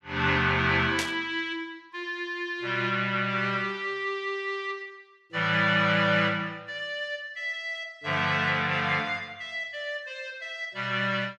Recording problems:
static burst; at 1 s; peak +1 dB vs average level

